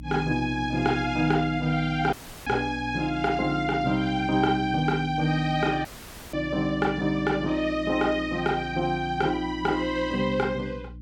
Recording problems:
electrical hum; 60 Hz, harmonics up to 300 Hz, SNR 17 dB
audio cutting out; at 2 s and at 6 s

